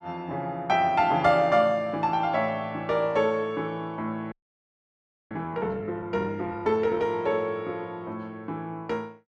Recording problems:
frozen audio; at 4.5 s for 1 s

